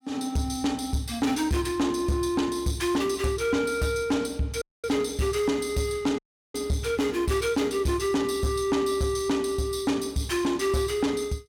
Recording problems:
distortion; soft clipping, signal-to-distortion ratio 11 dB
dropout; at 4.5 s and at 6 s

